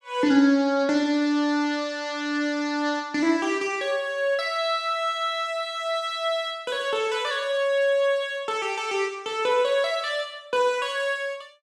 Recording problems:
none

